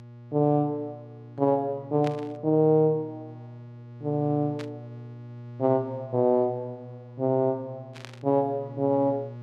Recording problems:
electrical hum; 60 Hz, harmonics up to 840 Hz, SNR 17 dB
static burst; at 2 s, at 4.5 s and at 8 s; peak -9 dB vs average level

